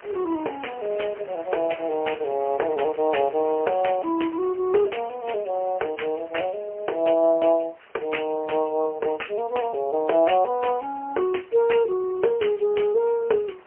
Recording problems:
phone line; 340 Hz to 3.1 kHz, AMR-NB, then MP3
wind on the microphone; below 2.1 kHz, SNR 23 dB

